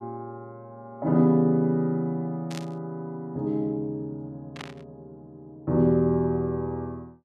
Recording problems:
burst of static; at 2.5 s and at 4.5 s; peak -8 dB vs average level

